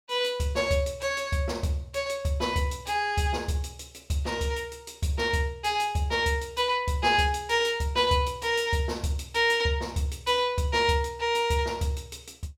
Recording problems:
none

